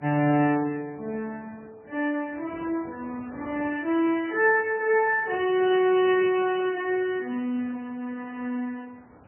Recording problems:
lossy compression; Speex, then MP3, log-spectral distance 4 dB, nothing above 2.7 kHz
wind noise; below 1.1 kHz, SNR 23 dB

